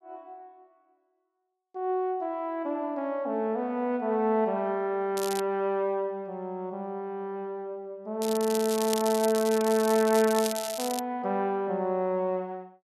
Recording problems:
crackling; at 5 s and from 8 to 11 s; loose cable, SNR 8 dB

